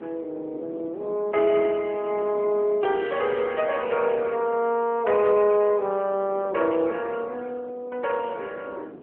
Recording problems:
phone line; 260 Hz to 3.4 kHz, AMR-NB
wind on the microphone; below 500 Hz, SNR 20 dB

